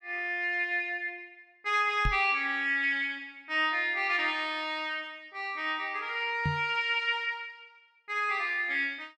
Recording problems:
microphone bump; at 2 s and at 6.5 s; peak +1 dB vs average level

